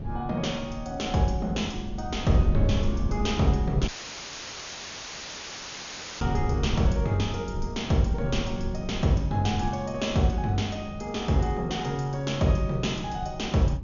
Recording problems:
treble cut off; nothing above 7 kHz
wind noise; below 120 Hz, SNR 7 dB
audio cutting out; at 4 s for 2.5 s; filled with static

